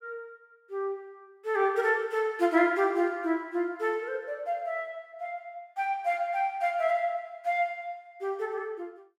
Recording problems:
none

